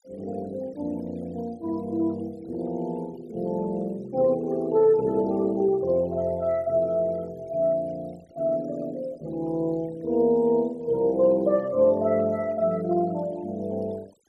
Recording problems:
noise reduction artefacts; signal-to-artefact ratio 26 dB

